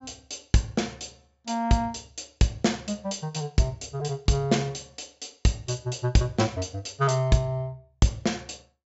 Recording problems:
low-pass filter; nothing above 8 kHz

